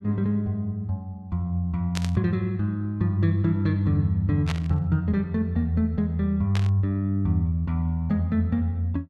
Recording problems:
static burst; at 2 s, at 4.5 s and at 6.5 s; peak -3 dB vs average level

